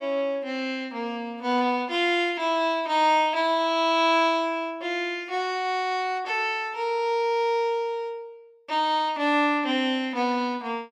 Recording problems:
none

